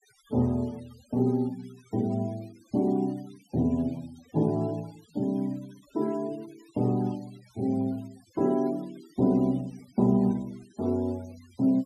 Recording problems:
noise reduction artefacts; signal-to-artefact ratio 26 dB

